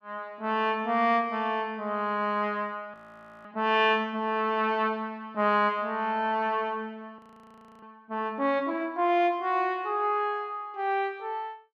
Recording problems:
frozen audio; at 3 s for 0.5 s and at 7 s for 0.5 s

